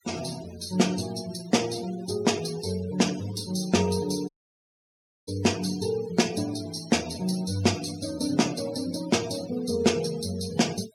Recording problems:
denoising artefacts; signal-to-artefact ratio 15 dB
audio cutting out; at 4.5 s for 1 s

